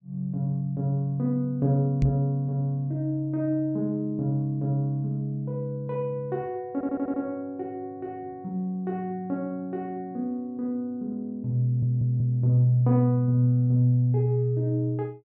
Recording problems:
microphone thump; at 2 s; peak +6 dB vs average level
stutter; at 6.5 s and at 12 s

